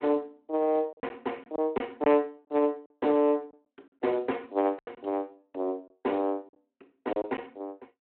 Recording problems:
phone line; 260 Hz to 3.4 kHz, Speex
packet loss; 6% of the sound replaced, filled with silence

